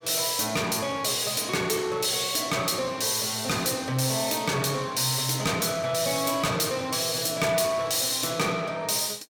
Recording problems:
distortion; soft clipping, signal-to-distortion ratio 11 dB

